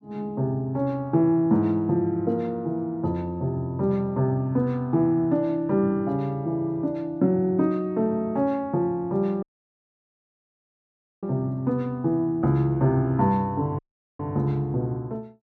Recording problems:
audio cutting out; at 9.5 s for 2 s and at 14 s

